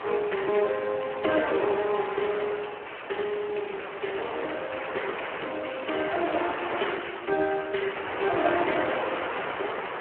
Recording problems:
telephone audio; 320 Hz to 3.1 kHz, Speex
background hiss; SNR 23 dB
wind noise; below 1.9 kHz, SNR 5 dB

